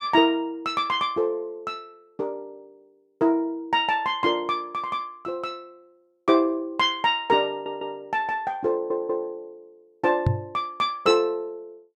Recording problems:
stutter; at 7.5 s and at 8.5 s
microphone thump; at 10 s; peak +7 dB vs average level

